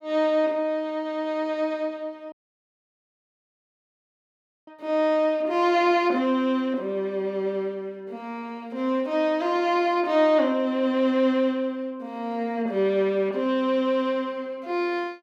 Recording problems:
dropout; at 2.5 s for 2.5 s

